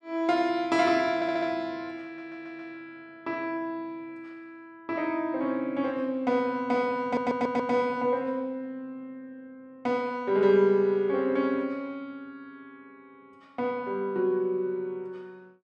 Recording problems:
stutter; at 1 s, at 2 s and at 7 s

